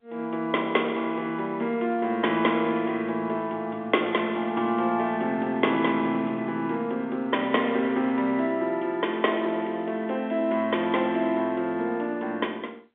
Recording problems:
phone line; 170 Hz to 3.6 kHz, G.711

